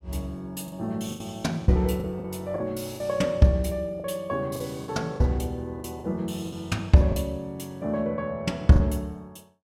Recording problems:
packet loss; 7% of the sound replaced, filled with the last packet

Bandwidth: 16.5 kHz